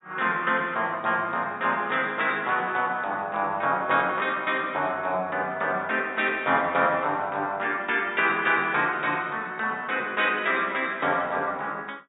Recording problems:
treble cut off; nothing above 4 kHz

